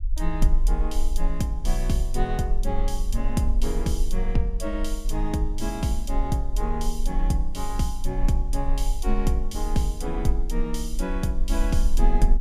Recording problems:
rumble; below 38 Hz, strongest tone 18 Hz, SNR 0 dB

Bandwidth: 15 kHz